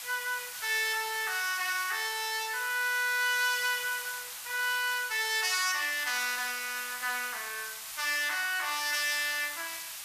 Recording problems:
hiss; SNR 8 dB

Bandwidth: 14.5 kHz